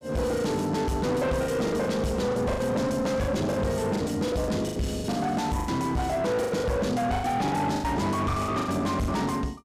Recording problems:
distorted audio; soft clipping, signal-to-distortion ratio 7 dB
packet loss; 13% of the sound replaced, filled with the last packet

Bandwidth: 15 kHz